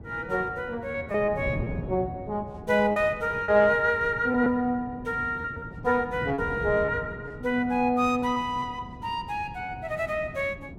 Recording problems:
wind noise; below 260 Hz, SNR 13 dB
packet loss; 5% of the sound replaced, filled with repeated pitch periods

